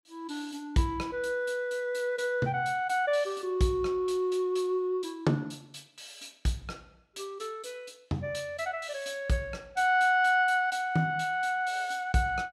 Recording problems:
none

